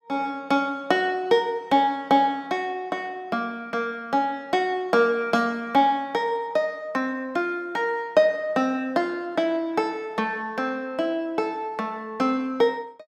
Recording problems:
none

